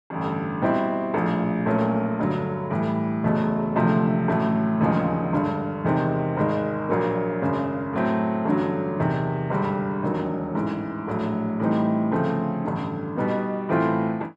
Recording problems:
none

